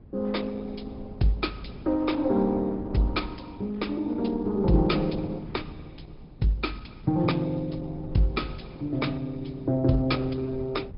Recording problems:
low-pass filter; nothing above 5.2 kHz
lossy codec; Opus, log-spectral distance 3 dB
wind noise; below 190 Hz, SNR 16 dB

